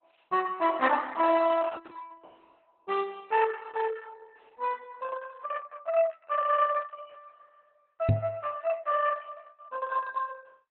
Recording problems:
codec artefacts; Opus, log-spectral distance 4 dB, nothing above 4 kHz
microphone thump; at 8 s; peak +8 dB vs average level

